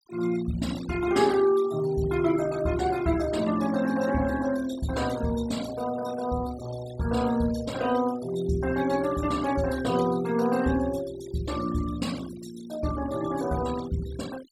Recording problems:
noise reduction artefacts; signal-to-artefact ratio 16 dB

